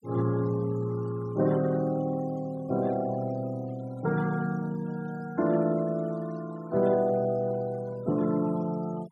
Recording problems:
denoising artefacts; signal-to-artefact ratio 23 dB

